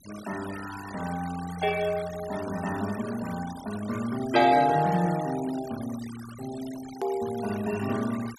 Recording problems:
noise reduction artefacts; signal-to-artefact ratio 15 dB
edit click; at 7 s

